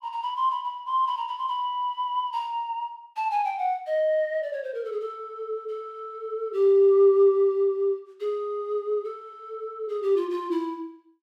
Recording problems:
none

